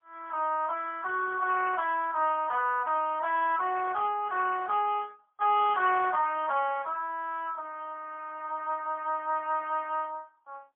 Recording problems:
telephone audio; 320 Hz to 3.3 kHz, AMR-NB, then MP3

